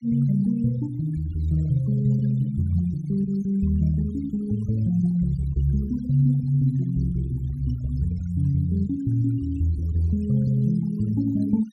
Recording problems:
noise reduction artefacts; signal-to-artefact ratio 23 dB

